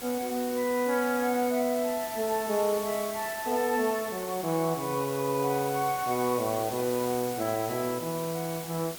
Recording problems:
hiss; slope -1 dB per octave, SNR 10 dB

